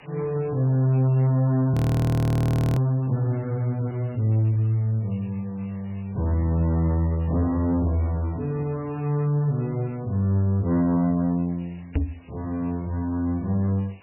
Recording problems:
lossy compression; MP3, log-spectral distance 7 dB, nothing above 17.1 kHz
distorted audio; soft clipping, signal-to-distortion ratio 12 dB
hiss; SNR 28 dB
frozen audio; at 1.5 s for 1 s
microphone bump; at 12 s; peak +3 dB vs average level

